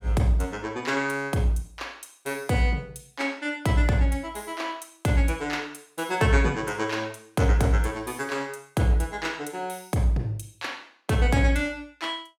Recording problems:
none

